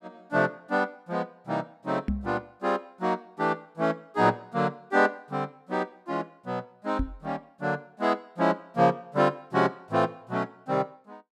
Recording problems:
knock on the microphone; at 2 s and at 7 s; peak +3 dB vs average level

